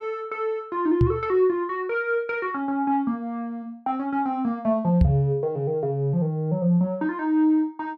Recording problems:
knock on the microphone; at 1 s and at 5 s; peak +7 dB vs average level

